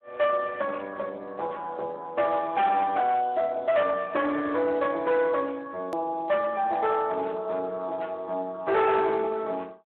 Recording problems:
telephone audio; 300 Hz to 4 kHz, Speex
distortion; hard clipping, signal-to-distortion ratio 12 dB
hard cut with a click; at 6 s

